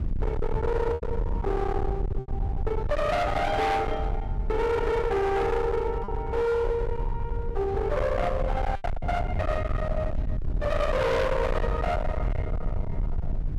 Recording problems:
distorted audio; hard clipping, uneven, signal-to-distortion ratio 6 dB
rumble; below 170 Hz, SNR 4 dB
lost packets; 3% of the sound replaced, filled with repeated pitch periods

